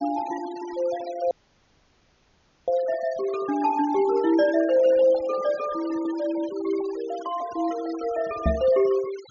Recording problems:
treble missing; nothing above 6.8 kHz
denoising artefacts; signal-to-artefact ratio 18 dB
dropout; at 1.5 s for 1.5 s
microphone bump; at 8.5 s; peak +3 dB vs average level

